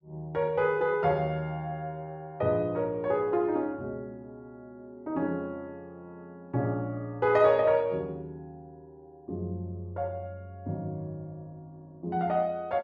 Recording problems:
none

